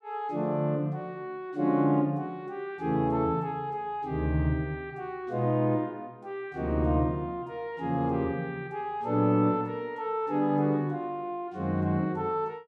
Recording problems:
none

